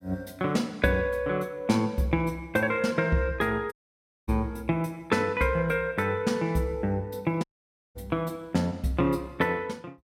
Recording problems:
dropout; at 3.5 s for 0.5 s and at 7.5 s for 0.5 s

